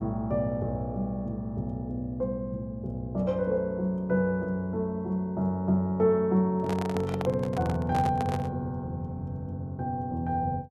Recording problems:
microphone handling noise; from 6.5 to 8.5 s; peak -1 dB vs average level

